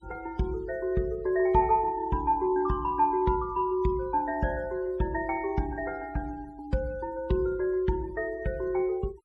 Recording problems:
denoising artefacts; signal-to-artefact ratio 27 dB

